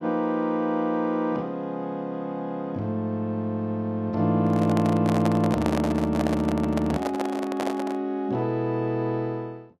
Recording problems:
microphone handling noise; from 4.5 to 8 s; peak 0 dB vs average level

